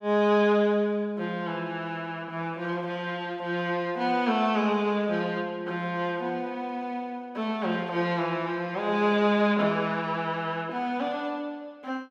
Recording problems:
none

